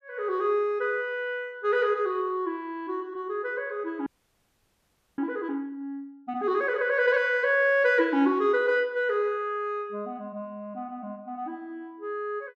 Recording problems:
audio freezing; at 4 s for 1 s

